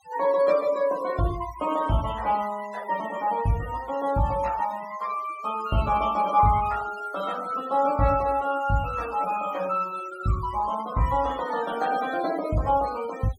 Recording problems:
noise reduction artefacts; signal-to-artefact ratio 17 dB

